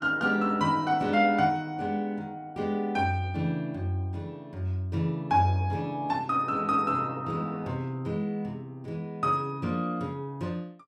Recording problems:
none

